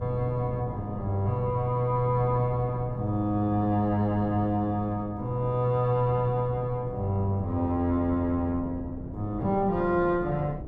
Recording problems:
wind on the microphone; below 290 Hz, SNR 13 dB

